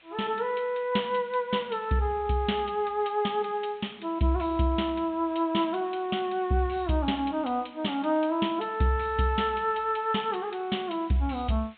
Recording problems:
treble missing; nothing above 4 kHz
hiss; SNR 27 dB

